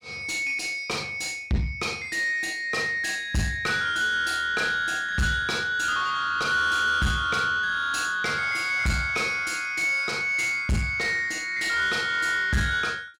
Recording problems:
distortion; soft clipping, signal-to-distortion ratio 10 dB

